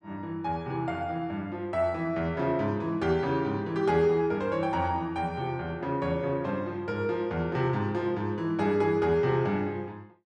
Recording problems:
none

